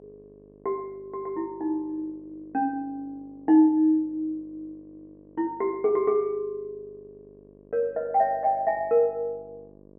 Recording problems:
low-pass filter; nothing above 3.3 kHz
hum; 50 Hz, harmonics up to 1.1 kHz, SNR 27 dB

